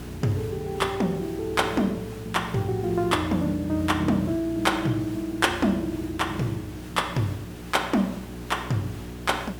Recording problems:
electrical hum; 60 Hz, harmonics up to 420 Hz, SNR 14 dB
hiss; slope -4 dB per octave, SNR 18 dB

